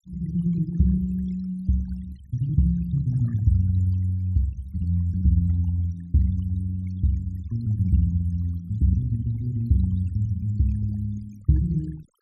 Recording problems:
noise reduction artefacts; signal-to-artefact ratio 25 dB

